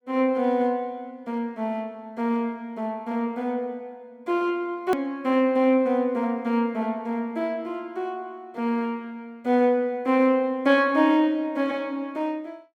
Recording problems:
hard cut with a click; at 5 s

